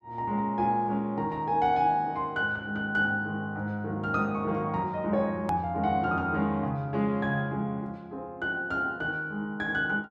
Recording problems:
hard cut with a click; at 5.5 s

